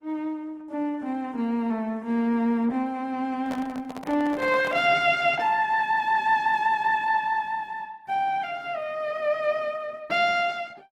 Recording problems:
codec artefacts; Opus, log-spectral distance 2 dB
microphone handling noise; from 3.5 to 5 s; peak -8 dB vs average level

